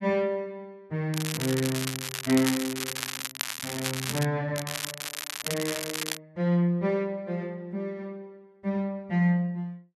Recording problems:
crackling; from 1 to 4.5 s and from 4.5 to 6 s; loose cable, SNR 3 dB

